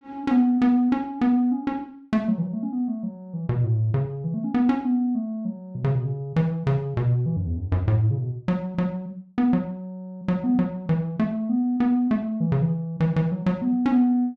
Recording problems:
none

